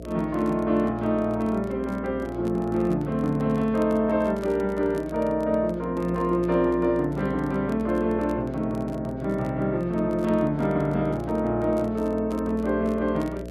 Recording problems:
hum; 60 Hz, harmonics up to 660 Hz, SNR 13 dB
crackle; vinyl, SNR 29 dB

